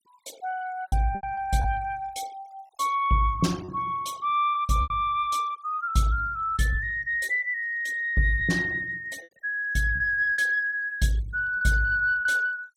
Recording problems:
denoising artefacts; signal-to-artefact ratio 23 dB
lost packets; 5% of the sound replaced, filled with repeated pitch periods

